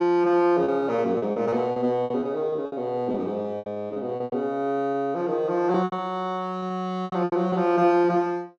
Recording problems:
lost packets; 13% of the sound replaced, filled with repeated pitch periods

